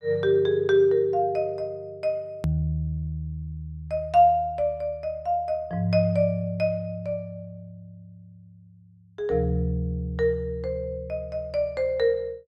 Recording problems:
edit click; at 2.5 s

